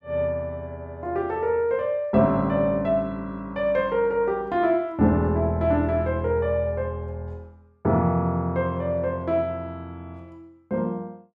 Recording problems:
none

